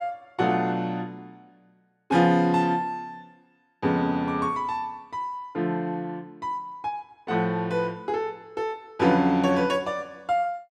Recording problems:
none

